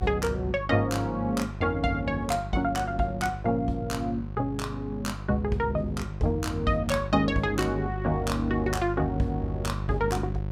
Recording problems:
hum; 50 Hz, harmonics up to 750 Hz, SNR 8 dB

